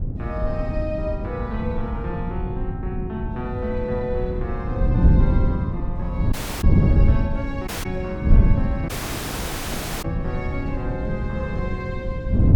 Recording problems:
wind on the microphone; below 150 Hz, SNR -6 dB
dropout; at 6.5 s, at 7.5 s and at 9 s for 1 s

